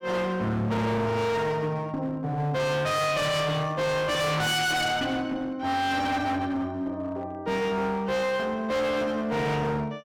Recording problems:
distorted audio; hard clipping, uneven, signal-to-distortion ratio 5 dB

